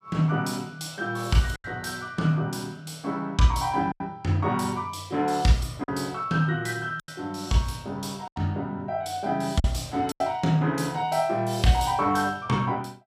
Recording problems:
packet loss; 4% of the sound replaced, filled with silence

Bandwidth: 15 kHz